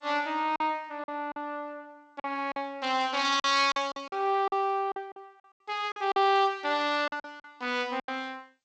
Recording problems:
codec artefacts; G.722, log-spectral distance 2 dB
packet loss; 10% of the sound replaced, filled with silence

